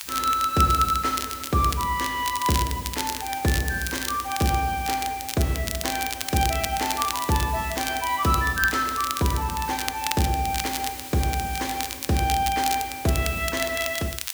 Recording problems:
hiss; slope +4 dB per octave, SNR 12 dB
crackling; vinyl, SNR 7 dB

